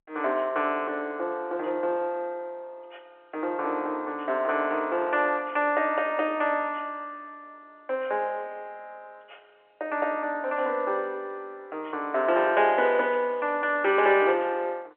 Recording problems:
phone line; 320 Hz to 3.6 kHz, G.711

